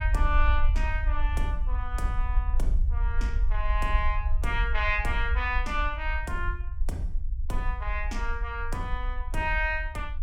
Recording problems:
low-frequency rumble; below 56 Hz, SNR -1 dB

